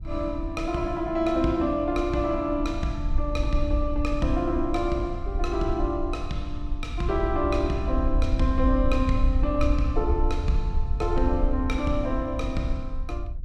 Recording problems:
wind on the microphone; below 62 Hz, SNR 3 dB

